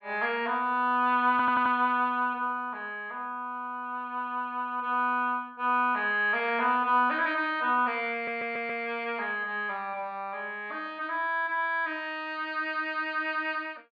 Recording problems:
stutter; at 1.5 s, at 3.5 s and at 8 s

